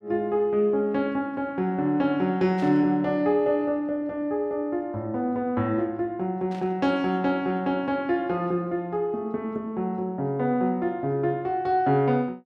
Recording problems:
static burst; at 2.5 s and at 6.5 s; peak -15 dB vs average level

